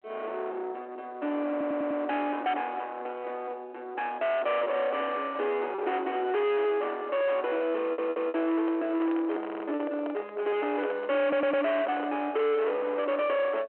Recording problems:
phone line; 800 Hz to 2.9 kHz, G.726
distorted audio; soft clipping, signal-to-distortion ratio 7 dB
lost packets; 3% of the sound replaced, filled with repeated pitch periods
audio stuttering; 4 times, first at 1.5 s
handling noise; from 8 to 12 s; peak -4 dB vs average level

